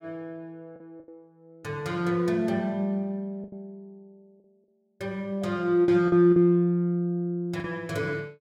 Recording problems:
packet loss; 5% of the sound replaced, filled with the last packet

